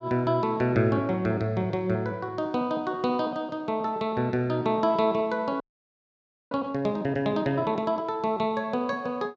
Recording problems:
frozen audio; at 5.5 s for 1 s

